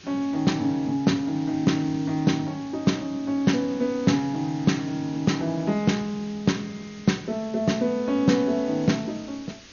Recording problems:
lossy codec; MP2, log-spectral distance 5 dB, nothing above 6.7 kHz
hiss; SNR 21 dB

